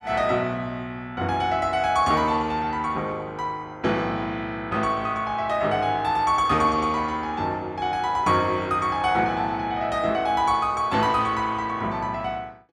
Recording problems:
none

